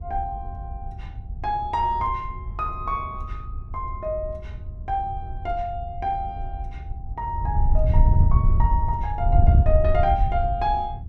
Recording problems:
wind noise; below 84 Hz, SNR -1 dB

